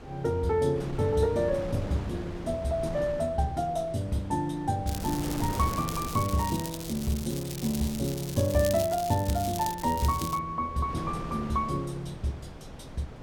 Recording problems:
wind on the microphone; below 530 Hz, SNR 12 dB
crackle; from 5 to 10 s; loose cable, SNR 10 dB

